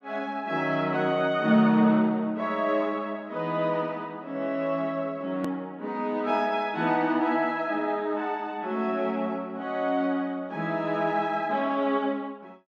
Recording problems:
hard cut with a click; at 5.5 s

